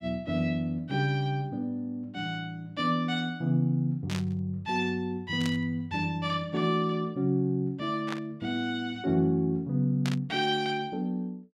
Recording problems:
burst of static; 4 times, first at 4 s; peak -3 dB vs average level

